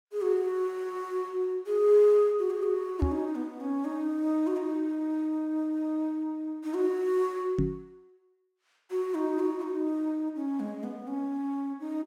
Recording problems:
knock on the microphone; at 3 s and at 7.5 s; peak +4 dB vs average level

